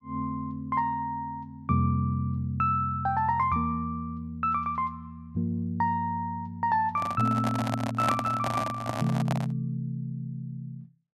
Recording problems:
microphone handling noise; from 7 to 9.5 s; peak +4 dB vs average level

